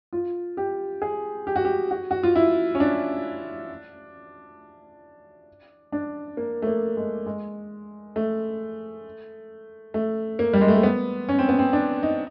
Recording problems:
low-pass filter; nothing above 5.5 kHz

